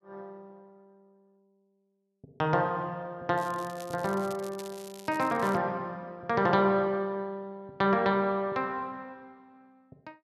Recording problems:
crackling; from 3.5 to 5.5 s; loose cable, SNR 20 dB

